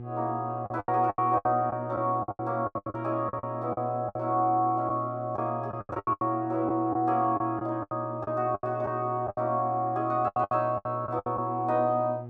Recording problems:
hum; 60 Hz, harmonics up to 840 Hz, SNR 12 dB
lost packets; 15% of the sound replaced, filled with the last packet

